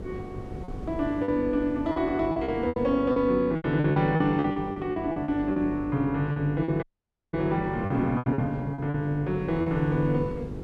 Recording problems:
hum; 50 Hz, harmonics up to 500 Hz, SNR 13 dB
wind noise; below 260 Hz, SNR 17 dB
lost packets; 12% of the sound replaced, filled with repeated pitch periods
audio cutting out; at 7 s for 0.5 s

